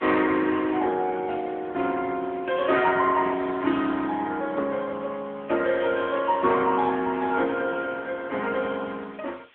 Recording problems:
phone line; 220 Hz to 3.5 kHz, AMR-NB
hiss; SNR 30 dB

